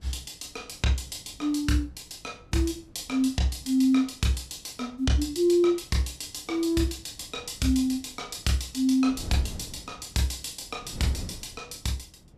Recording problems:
wind on the microphone; below 220 Hz, SNR 19 dB

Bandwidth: 14.5 kHz